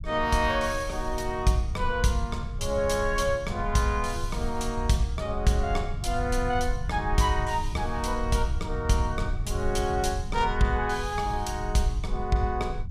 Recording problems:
rumble; below 86 Hz, SNR 7 dB

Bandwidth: 15 kHz